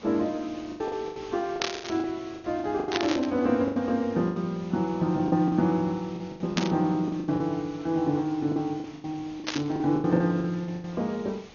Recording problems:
lossy codec; AAC, then MP2, log-spectral distance 3 dB
background hiss; slope -3 dB per octave, SNR 20 dB
packet loss; 15% of the sound replaced, filled with the last packet
burst of static; 4 times, first at 1.5 s; peak +4 dB vs average level

